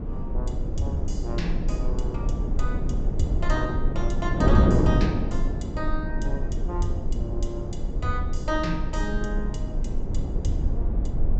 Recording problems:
treble cut off; nothing above 8 kHz
low-frequency rumble; below 46 Hz, strongest tone 20 Hz, SNR 0 dB
wind on the microphone; below 270 Hz, SNR -3 dB

